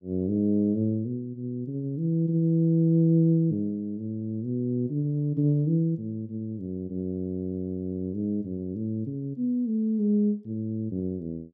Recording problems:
none

